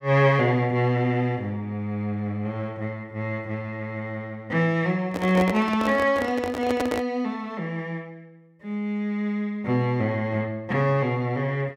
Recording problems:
handling noise; from 5 to 7 s; peak +4 dB vs average level

